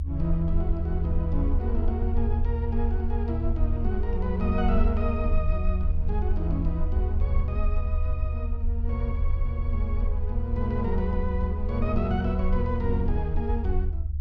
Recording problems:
rumble; below 76 Hz, SNR -3 dB

